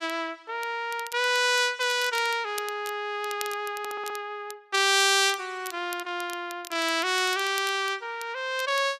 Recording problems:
crackling; vinyl, SNR 17 dB
stutter; at 4 s

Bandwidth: 14.5 kHz